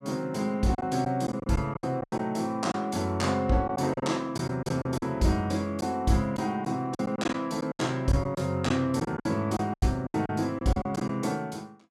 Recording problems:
lost packets; 10% of the sound replaced, filled with silence

